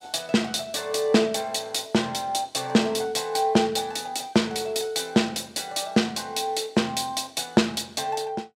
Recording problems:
none

